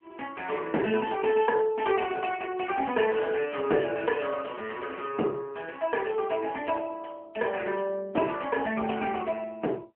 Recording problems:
telephone audio; 240 Hz to 3.2 kHz, AMR-NB

